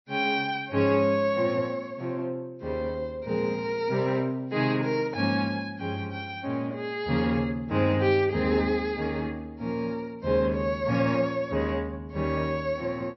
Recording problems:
codec artefacts; MP3, log-spectral distance 2 dB, nothing above 5.7 kHz

